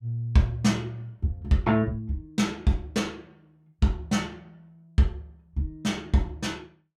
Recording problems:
none

